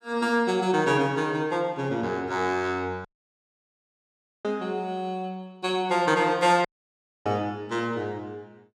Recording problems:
dropout; at 3 s for 1.5 s and at 6.5 s for 0.5 s

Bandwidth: 15.5 kHz